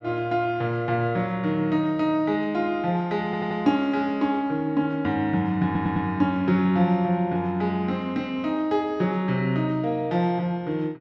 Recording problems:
audio stuttering; at 3.5 s and at 5.5 s

